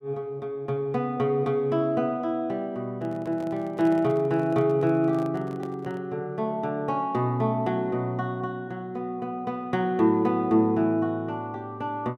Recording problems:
handling noise; from 3 to 6 s; peak -10 dB vs average level

